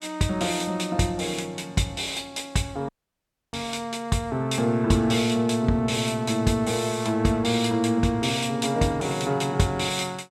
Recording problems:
dropout; at 3 s for 0.5 s

